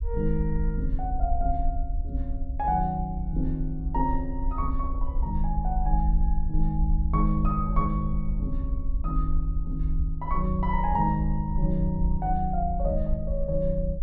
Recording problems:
low-frequency rumble; below 56 Hz, SNR 1 dB

